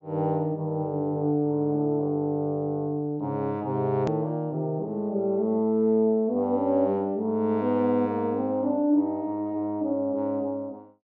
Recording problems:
low-pass filter; nothing above 8 kHz
click at an edit; at 4 s

